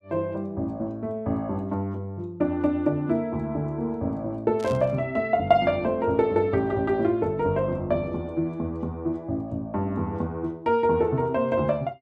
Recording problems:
static burst; at 4.5 s; peak -14 dB vs average level

